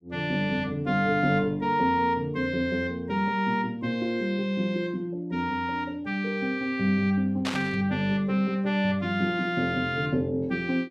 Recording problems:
static burst; at 7.5 s; peak -1 dB vs average level

